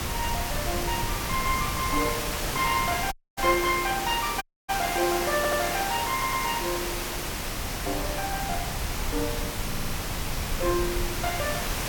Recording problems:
hiss; slope -3 dB per octave, SNR 2 dB
rumble; below 110 Hz, SNR 9 dB
dropout; at 3 s and at 4.5 s
stutter; at 5.5 s, at 6 s and at 9.5 s

